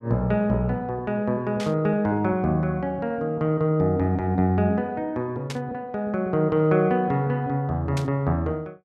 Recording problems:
burst of static; at 1.5 s, at 5.5 s and at 8 s; peak -6 dB vs average level

